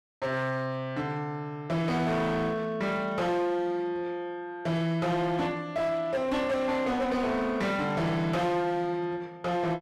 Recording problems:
distorted audio; hard clipping, signal-to-distortion ratio 10 dB

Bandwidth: 14 kHz